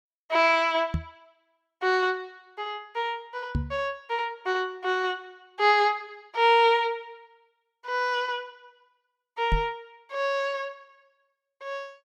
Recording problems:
microphone bump; at 1 s, at 3.5 s and at 9.5 s; peak +2 dB vs average level

